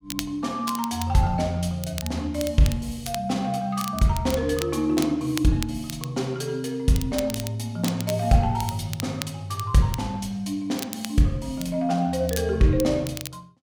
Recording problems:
crackling; vinyl, SNR 13 dB

